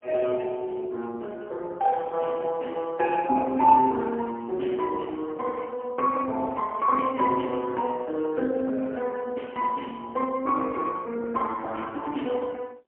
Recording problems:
telephone audio; 220 Hz to 2.6 kHz, AMR-NB, then MP3

